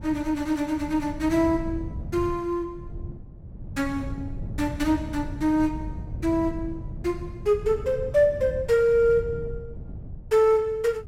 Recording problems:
wind noise; below 140 Hz, SNR 12 dB

